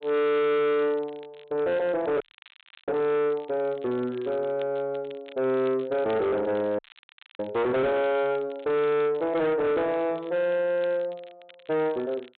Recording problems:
low-pass filter; nothing above 4 kHz
distortion; soft clipping, signal-to-distortion ratio 8 dB
crackling; vinyl, SNR 26 dB
frozen audio; at 2 s for 0.5 s and at 7 s for 0.5 s

